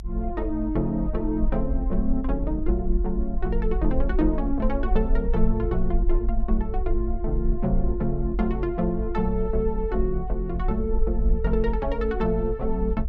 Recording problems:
rumble; below 50 Hz, SNR 2 dB

